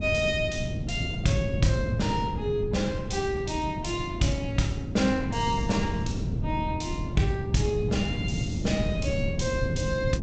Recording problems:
codec artefacts; G.722, log-spectral distance 3 dB, nothing above 7.8 kHz
wind on the microphone; below 200 Hz, SNR 3 dB

